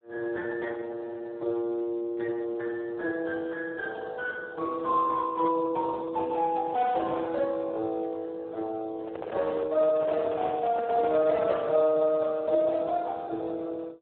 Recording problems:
telephone audio; 280 Hz to 3 kHz, Speex
microphone handling noise; from 9 to 12 s; peak -3 dB vs average level

